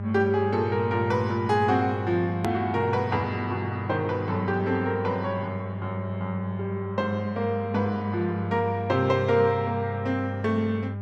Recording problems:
electrical hum; 50 Hz, harmonics up to 1 kHz, SNR 7 dB
click at an edit; at 2.5 s

